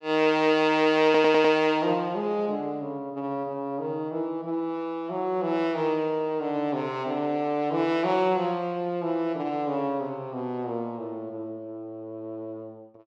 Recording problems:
audio stuttering; at 1 s

